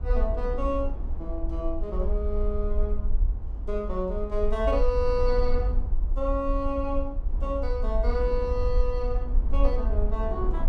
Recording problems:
low-frequency rumble; below 52 Hz, SNR 0 dB
wind noise; below 520 Hz, SNR 14 dB

